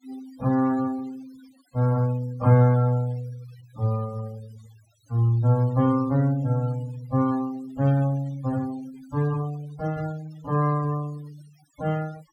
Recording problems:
noise reduction artefacts; signal-to-artefact ratio 23 dB

